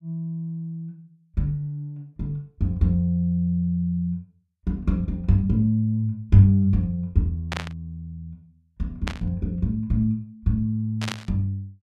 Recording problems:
static burst; at 7.5 s, at 9 s and at 11 s; peak -2 dB vs average level

